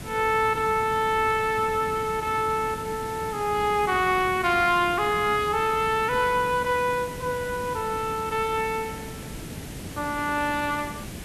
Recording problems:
hiss; SNR 13 dB

